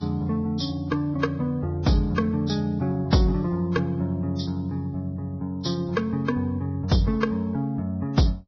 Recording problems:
lossy compression; Vorbis, log-spectral distance 2 dB, nothing above 5.7 kHz

